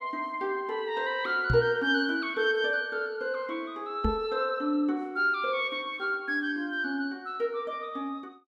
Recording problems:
knock on the microphone; at 1.5 s and at 4 s; peak +4 dB vs average level

